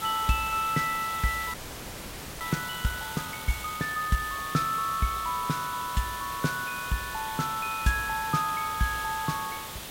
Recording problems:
background hiss; slope -2 dB per octave, SNR 8 dB
frozen audio; at 1.5 s for 1 s

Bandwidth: 16 kHz